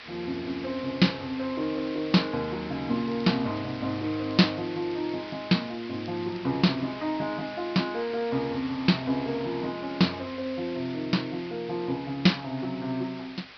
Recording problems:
low-pass filter; nothing above 5.5 kHz
hiss; SNR 14 dB
crackle; from 3 to 5.5 s and at 5.5 s; loose cable, SNR 27 dB

